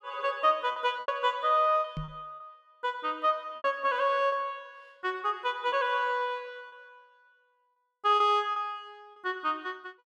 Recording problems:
lost packets; 6% of the sound replaced, filled with repeated pitch periods
knock on the microphone; at 2 s; peak -4 dB vs average level

